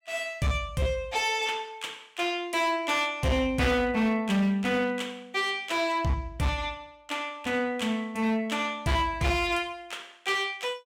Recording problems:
distorted audio; hard clipping, signal-to-distortion ratio 11 dB

